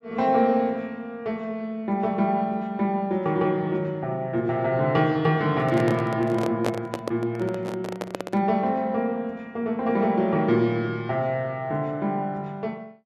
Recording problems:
microphone handling noise; from 5.5 to 8.5 s; peak +2 dB vs average level

